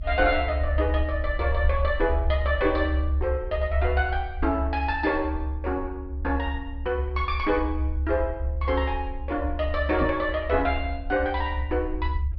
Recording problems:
treble missing; nothing above 5.5 kHz
low-frequency rumble; below 72 Hz, strongest tone 70 Hz, SNR 3 dB
knock on the microphone; at 10 s; peak +1 dB vs average level

